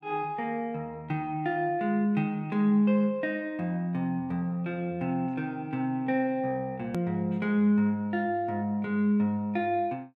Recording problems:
click at an edit; at 7 s

